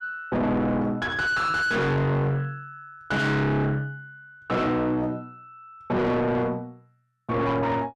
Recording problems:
distorted audio; soft clipping, signal-to-distortion ratio 5 dB

